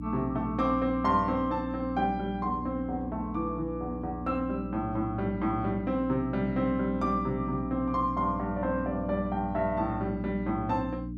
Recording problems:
hum; 60 Hz, harmonics up to 300 Hz, SNR 7 dB

